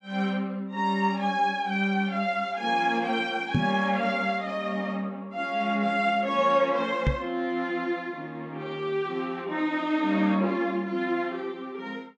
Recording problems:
microphone bump; at 3.5 s and at 7 s; peak +5 dB vs average level

